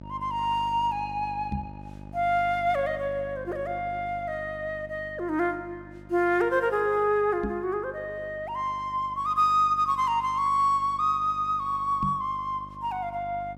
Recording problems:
hum; 50 Hz, harmonics up to 950 Hz, SNR 19 dB
microphone bump; at 1.5 s, at 7.5 s and at 12 s; peak 0 dB vs average level

